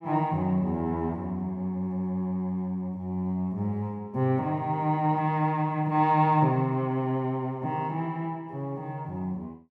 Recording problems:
none

